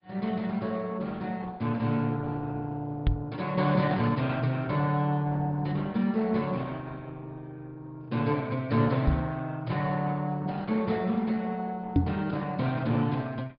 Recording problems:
low-pass filter; nothing above 5 kHz
codec artefacts; Opus, log-spectral distance 3 dB
knock on the microphone; at 3 s, at 9 s and at 12 s; peak +10 dB vs average level

